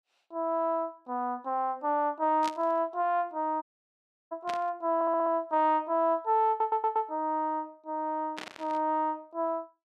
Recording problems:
static burst; at 2.5 s, at 4.5 s and at 8.5 s; peak -6 dB vs average level
audio cutting out; at 3.5 s for 0.5 s
audio stuttering; at 5 s and at 6.5 s

